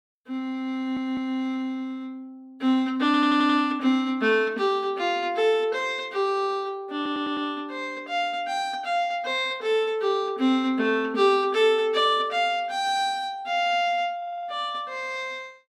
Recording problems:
stutter; 4 times, first at 1 s

